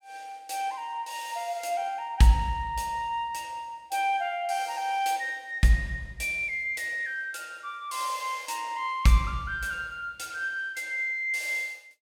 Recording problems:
none

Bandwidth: 17.5 kHz